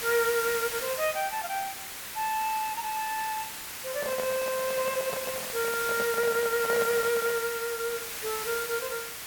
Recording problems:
background hiss; slope 0 dB per octave, SNR 4 dB
microphone handling noise; from 4 to 7.5 s; peak -1 dB vs average level

